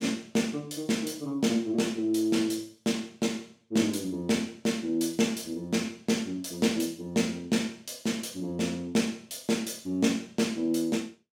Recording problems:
none

